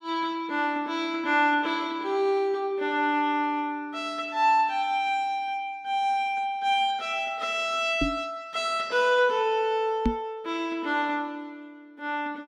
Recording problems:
microphone bump; at 8 s and at 10 s; peak +5 dB vs average level

